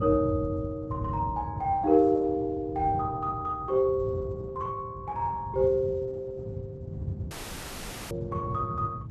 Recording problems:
codec artefacts; Opus, log-spectral distance 2 dB
wind noise; below 160 Hz, SNR 9 dB
dropout; at 7.5 s for 1 s

